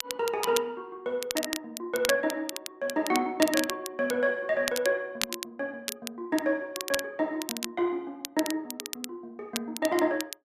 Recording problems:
crackling; vinyl, SNR 6 dB

